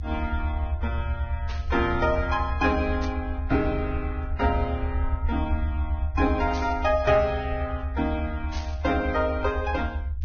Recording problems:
codec artefacts; Vorbis, log-spectral distance 2 dB, nothing above 6.3 kHz
rumble; below 78 Hz, SNR 3 dB
burst of static; 4 times, first at 1.5 s; peak -7 dB vs average level

